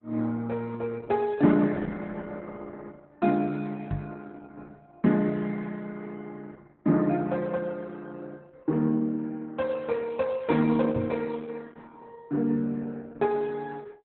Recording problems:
codec artefacts; Opus, log-spectral distance 3 dB, nothing above 4 kHz
microphone bump; at 4 s and at 11 s; peak +1 dB vs average level

